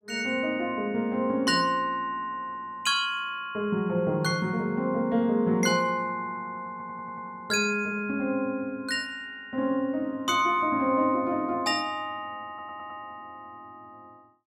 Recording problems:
stutter; at 6.5 s and at 12 s

